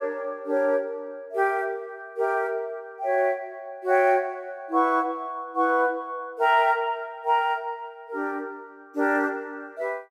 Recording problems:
none

